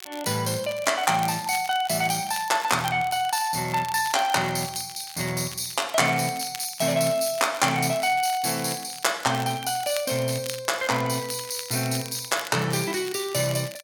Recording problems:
crackling; vinyl, SNR 15 dB

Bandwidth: 18 kHz